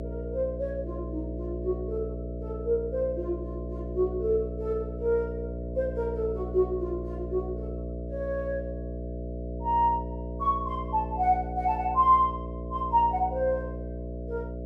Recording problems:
hum; 60 Hz, harmonics up to 660 Hz, SNR 7 dB

